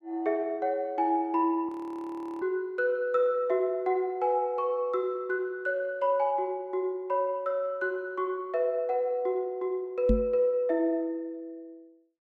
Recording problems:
frozen audio; at 1.5 s for 0.5 s
microphone bump; at 10 s; peak +6 dB vs average level

